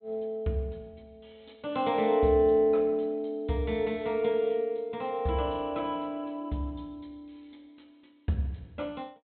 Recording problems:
treble missing; nothing above 4 kHz

